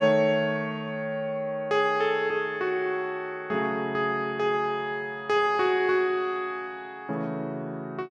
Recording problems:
none

